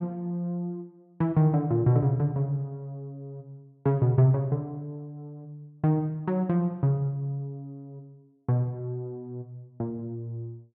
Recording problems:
none

